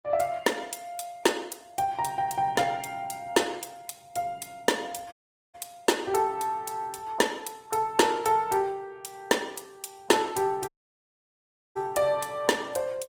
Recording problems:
codec artefacts; Opus, log-spectral distance 4 dB, nothing above 19 kHz
audio cutting out; at 5 s and at 11 s for 1 s

